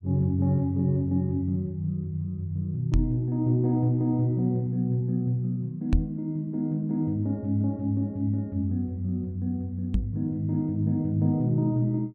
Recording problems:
knock on the microphone; at 3 s, at 6 s and at 10 s; peak +6 dB vs average level

